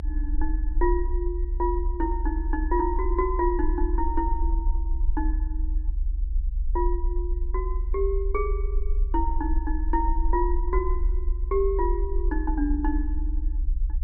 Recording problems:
treble missing; nothing above 5.5 kHz
rumble; below 60 Hz, strongest tone 38 Hz, SNR -1 dB

